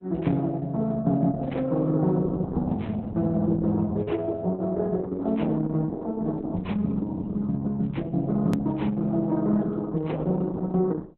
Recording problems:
codec artefacts; Opus, log-spectral distance 2 dB, nothing above 13.1 kHz
click at an edit; at 8.5 s

